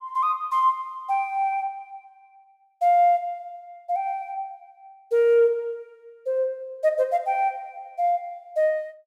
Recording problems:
none

